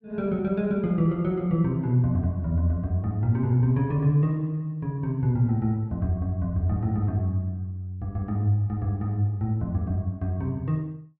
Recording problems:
none

